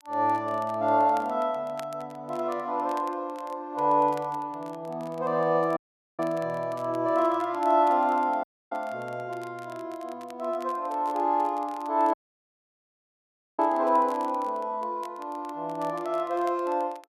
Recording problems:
crackling; vinyl, SNR 26 dB
dropout; at 6 s, at 8.5 s and at 12 s for 1.5 s

